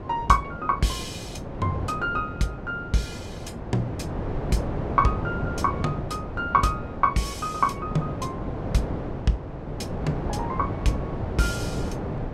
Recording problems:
wind on the microphone; below 500 Hz, SNR 5 dB

